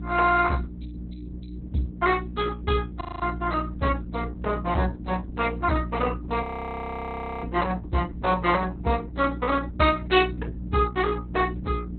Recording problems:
lossy codec; Opus, log-spectral distance 4 dB, nothing above 4 kHz
hum; 60 Hz, harmonics up to 420 Hz, SNR 10 dB
audio freezing; at 3 s and at 6.5 s for 1 s

